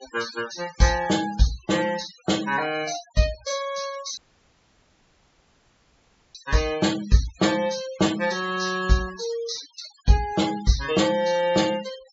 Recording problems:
treble missing; nothing above 7.5 kHz
denoising artefacts; signal-to-artefact ratio 15 dB
audio cutting out; at 4 s for 2 s

